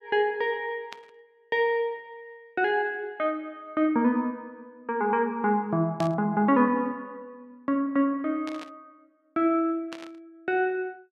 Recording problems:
burst of static; 4 times, first at 1 s; peak -8 dB vs average level

